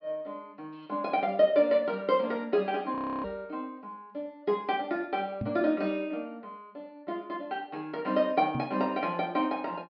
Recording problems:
treble missing; nothing above 5.5 kHz
frozen audio; at 3 s
microphone thump; at 3 s, at 5.5 s and at 8.5 s; peak -1 dB vs average level

